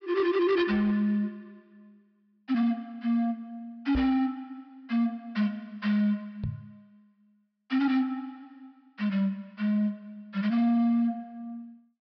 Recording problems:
treble cut off; nothing above 5.5 kHz
distorted audio; hard clipping, signal-to-distortion ratio 10 dB
knock on the microphone; at 4 s and at 6.5 s; peak -1 dB vs average level

